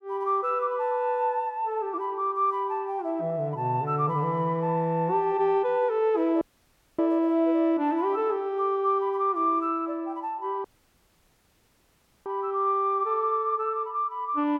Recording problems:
dropout; at 6.5 s for 0.5 s and at 11 s for 1.5 s

